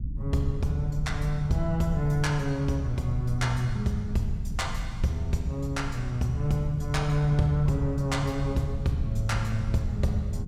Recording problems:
low-frequency rumble; below 110 Hz, SNR 7 dB

